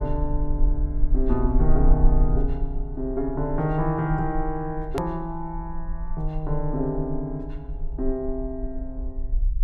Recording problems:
low-frequency rumble; below 42 Hz, strongest tone 18 Hz, SNR 2 dB
click at an edit; at 5 s

